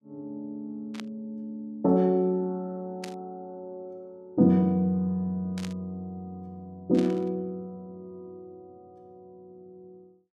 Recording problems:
static burst; 4 times, first at 1 s; peak -7 dB vs average level

